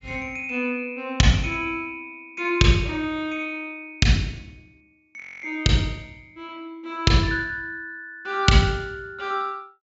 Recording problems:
low-pass filter; nothing above 8 kHz
audio freezing; at 5 s

